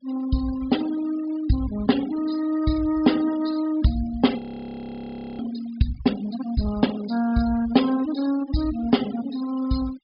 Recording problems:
treble cut off; nothing above 5.5 kHz
denoising artefacts; signal-to-artefact ratio 17 dB
frozen audio; at 4.5 s for 1 s

